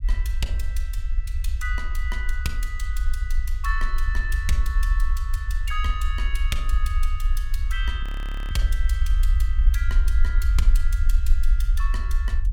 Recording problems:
low-frequency rumble; below 54 Hz, SNR -8 dB
audio freezing; at 8 s

